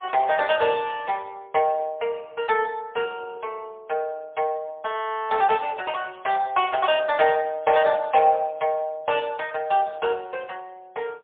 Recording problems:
phone line; 320 Hz to 3.5 kHz, AMR-NB, then MP3

